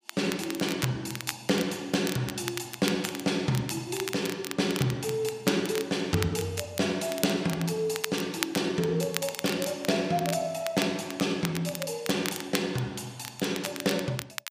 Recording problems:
crackle; vinyl, SNR 8 dB

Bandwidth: 15 kHz